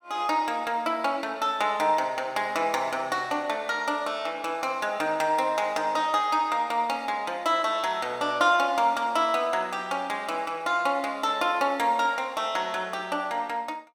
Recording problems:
none

